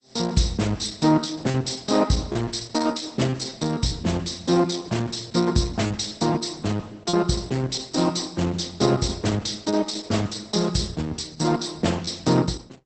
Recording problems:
codec artefacts; Opus, log-spectral distance 9 dB, nothing above 8.2 kHz
packet loss; 2% of the sound replaced, filled with repeated pitch periods

